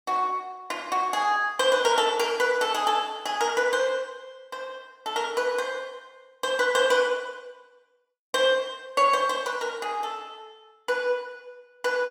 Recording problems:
none

